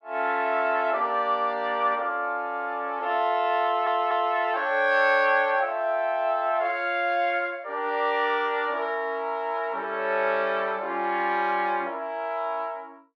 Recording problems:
stutter; at 3.5 s

